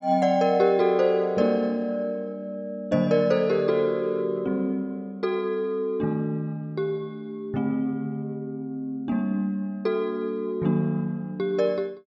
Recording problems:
none

